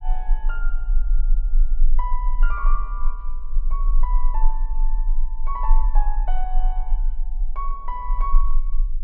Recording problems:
low-frequency rumble; below 30 Hz, strongest tone 20 Hz, SNR -9 dB

